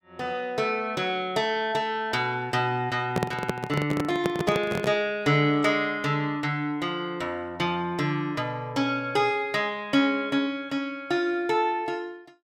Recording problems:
microphone handling noise; from 3 to 5 s; peak +3 dB vs average level

